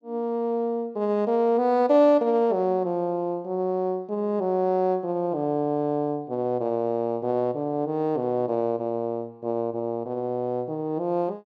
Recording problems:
none

